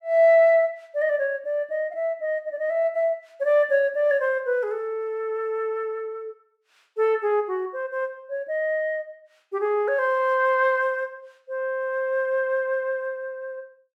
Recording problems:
none

